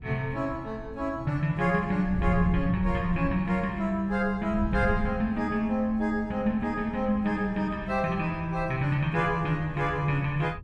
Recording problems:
wind noise; below 110 Hz, SNR 11 dB

